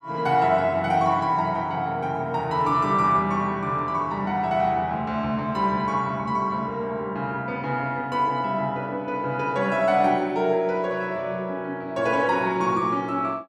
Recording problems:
none

